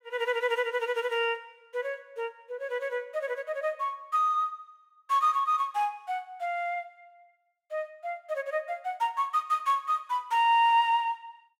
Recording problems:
none

